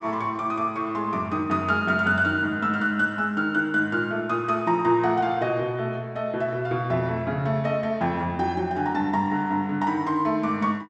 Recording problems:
none

